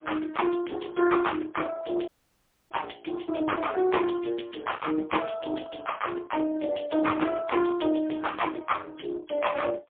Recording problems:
telephone audio; 260 Hz to 3.4 kHz, AMR-NB, then MP3
dropout; at 2 s for 0.5 s

